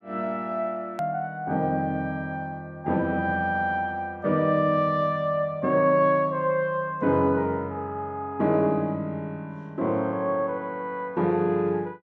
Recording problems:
hard cut with a click; at 1 s

